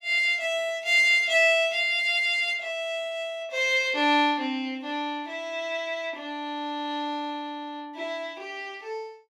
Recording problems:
none

